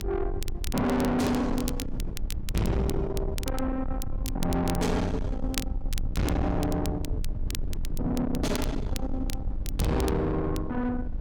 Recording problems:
distorted audio; soft clipping, signal-to-distortion ratio 7 dB
electrical hum; 50 Hz, harmonics up to 1.2 kHz, SNR 20 dB
low-frequency rumble; below 130 Hz, SNR 5 dB
wind on the microphone; below 320 Hz, SNR 16 dB
crackle; vinyl, SNR 14 dB

